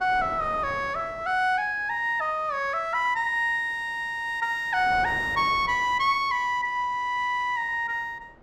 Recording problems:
wind on the microphone; below 870 Hz, SNR 20 dB

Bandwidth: 15 kHz